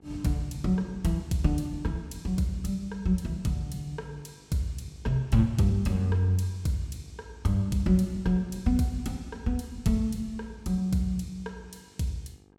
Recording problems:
hum; 50 Hz, harmonics up to 1.7 kHz, SNR 30 dB

